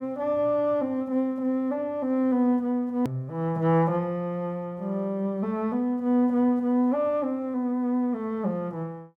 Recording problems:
hard cut with a click; at 3 s

